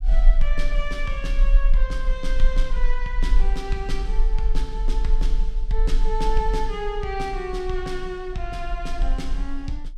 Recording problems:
rumble; below 36 Hz, SNR -4 dB

